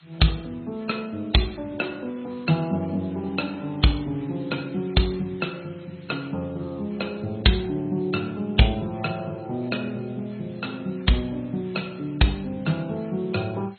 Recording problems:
lossy codec; MP3, then MP2, log-spectral distance 7 dB, nothing above 4.2 kHz
background hiss; SNR 27 dB

